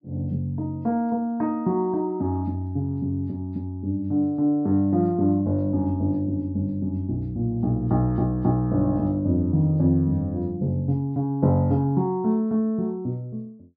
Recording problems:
none

